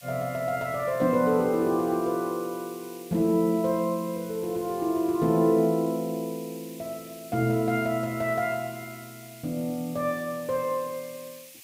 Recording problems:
hiss; SNR 19 dB

